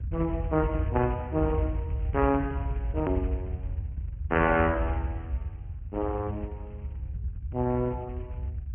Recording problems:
low-pass filter; nothing above 2.9 kHz
codec artefacts; Speex, log-spectral distance 2 dB
rumble; below 90 Hz, SNR 5 dB
hard cut with a click; at 3 s

